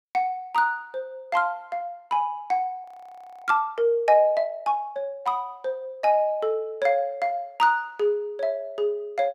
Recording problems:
audio freezing; at 3 s for 0.5 s

